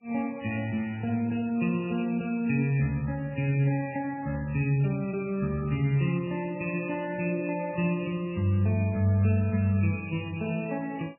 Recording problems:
lossy compression; Vorbis, then MP3, log-spectral distance 3 dB, nothing above 2.7 kHz

